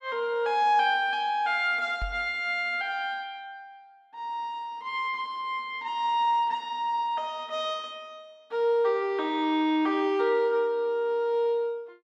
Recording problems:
microphone bump; at 2 s; peak -5 dB vs average level

